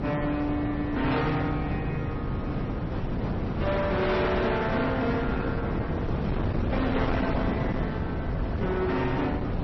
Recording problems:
codec artefacts; AAC, then MP3, log-spectral distance 2 dB, nothing above 5.8 kHz
distorted audio; hard clipping, signal-to-distortion ratio 7 dB
wind noise; below 460 Hz, SNR 2 dB

